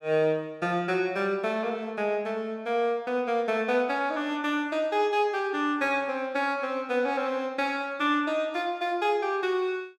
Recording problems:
none

